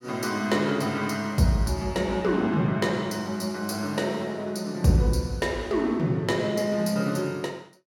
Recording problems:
none

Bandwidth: 17 kHz